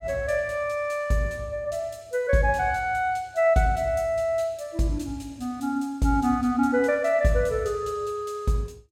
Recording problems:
none

